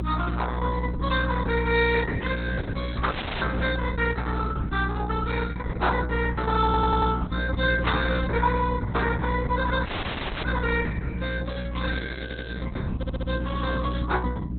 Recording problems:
codec artefacts; Opus, log-spectral distance 6 dB, nothing above 3.9 kHz
hum; 60 Hz, harmonics up to 300 Hz, SNR 3 dB
microphone handling noise; from 2.5 to 4.5 s; peak -7 dB vs average level
audio cutting out; at 3 s and at 10 s for 0.5 s
audio stuttering; at 6.5 s, at 12 s and at 13 s

